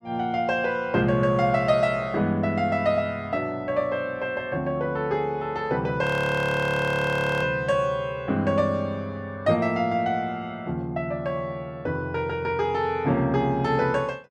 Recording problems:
audio freezing; at 6 s for 1.5 s

